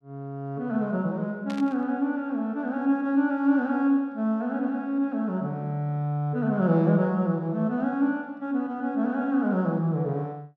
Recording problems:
static burst; at 1.5 s; peak -11 dB vs average level

